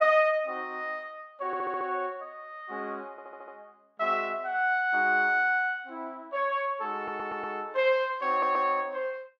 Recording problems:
audio stuttering; 4 times, first at 1.5 s

